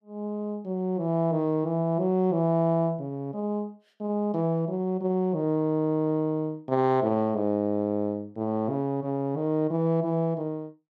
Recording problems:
none

